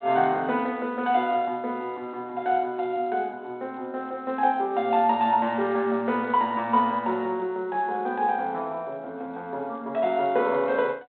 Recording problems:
phone line; 280 Hz to 3.7 kHz, G.726

